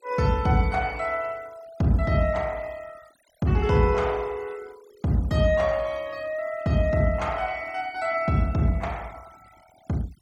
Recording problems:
noise reduction artefacts; signal-to-artefact ratio 26 dB

